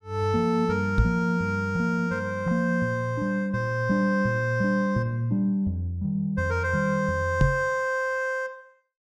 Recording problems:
microphone bump; at 1 s and at 7.5 s; peak +7 dB vs average level

